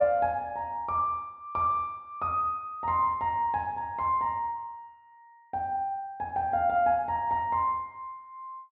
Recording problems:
treble missing; nothing above 5.5 kHz

